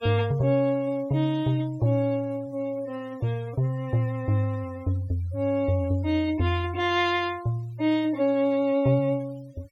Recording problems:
noise reduction artefacts; signal-to-artefact ratio 25 dB

